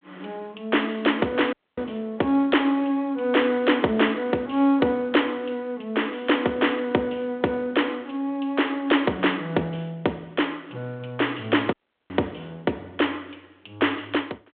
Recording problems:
phone line; 190 Hz to 3.6 kHz, G.726
audio cutting out; at 1.5 s and at 12 s

